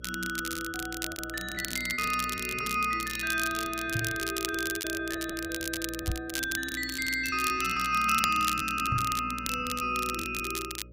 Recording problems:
electrical hum; 60 Hz, harmonics up to 600 Hz, SNR 18 dB
crackle; vinyl, SNR 6 dB
lost packets; 12% of the sound replaced, filled with repeated pitch periods
microphone thump; at 4 s, at 6 s and at 9 s; peak +3 dB vs average level

